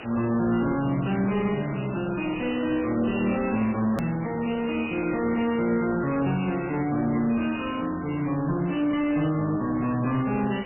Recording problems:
lossy codec; MP3, log-spectral distance 17 dB, nothing above 2.9 kHz
distortion; soft clipping, signal-to-distortion ratio 9 dB
hiss; SNR 15 dB
hard cut with a click; at 4 s

